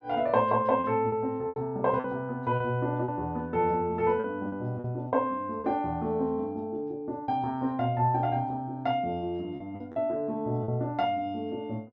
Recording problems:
packet loss; 6% of the sound replaced, filled with repeated pitch periods

